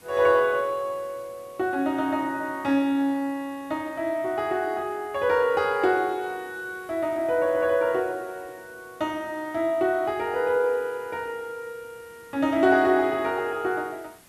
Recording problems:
hiss; slope -3 dB per octave, SNR 27 dB

